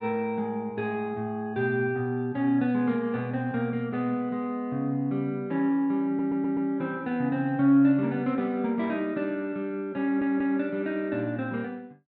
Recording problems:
audio stuttering; at 6 s and at 10 s

